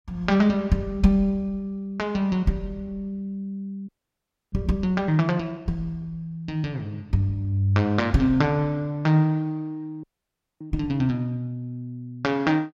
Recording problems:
audio freezing; at 4 s for 0.5 s and at 10 s for 0.5 s

